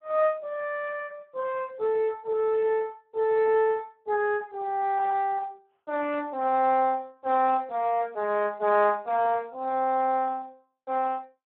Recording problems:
telephone audio; 320 Hz to 3.1 kHz, Speex

